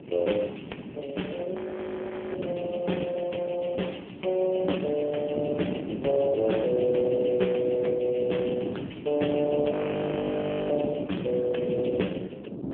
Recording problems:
phone line; 220 Hz to 3.3 kHz, AMR-NB
wind on the microphone; below 410 Hz, SNR 7 dB
audio freezing; at 1.5 s for 1 s and at 9.5 s for 1 s

